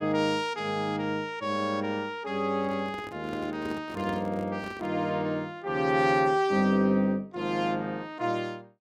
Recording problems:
microphone handling noise; from 2.5 to 5 s; peak -8 dB vs average level

